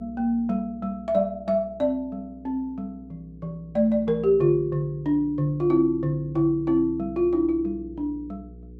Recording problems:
hum; 60 Hz, harmonics up to 480 Hz, SNR 21 dB

